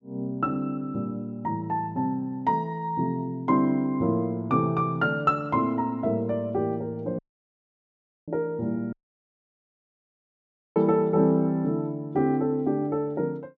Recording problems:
dropout; at 7 s for 1 s and at 9 s for 2 s

